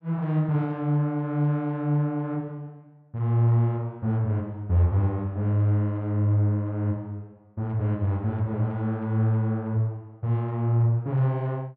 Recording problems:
none

